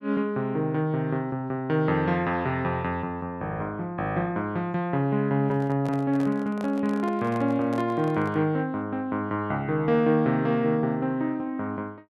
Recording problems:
handling noise; from 5.5 to 8.5 s; peak -9 dB vs average level

